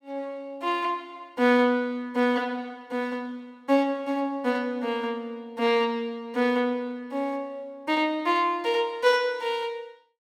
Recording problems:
none

